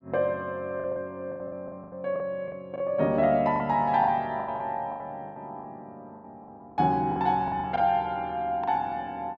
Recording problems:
packet loss; 13% of the sound replaced, filled with the last packet

